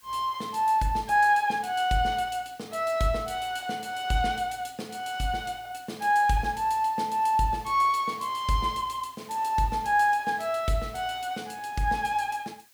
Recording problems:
hiss; SNR 28 dB

